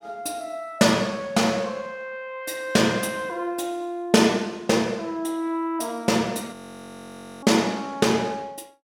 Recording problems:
audio freezing; at 6.5 s for 1 s

